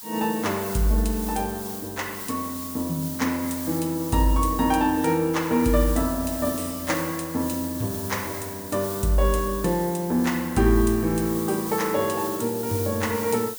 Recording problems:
background hiss; slope +1 dB per octave, SNR 9 dB

